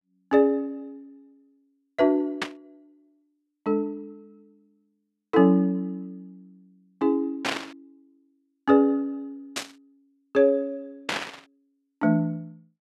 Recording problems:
burst of static; 4 times, first at 2.5 s; peak +1 dB vs average level

